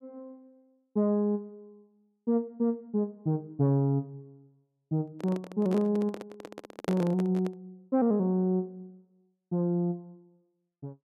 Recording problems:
handling noise; from 5 to 7.5 s; peak 0 dB vs average level

